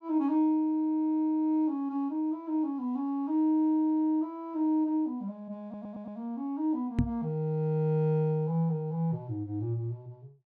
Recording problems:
audio stuttering; at 5.5 s
knock on the microphone; at 7 s; peak +5 dB vs average level

